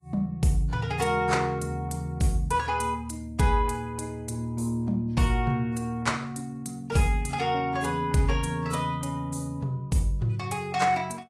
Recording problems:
lossy codec; AAC, log-spectral distance 2 dB, nothing above 11.6 kHz

